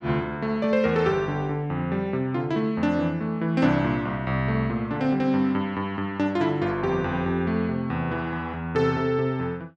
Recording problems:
none

